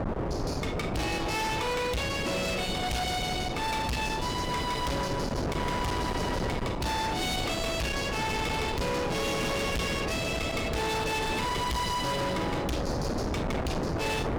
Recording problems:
distortion; hard clipping, signal-to-distortion ratio 6 dB
wind noise; below 880 Hz, SNR 2 dB

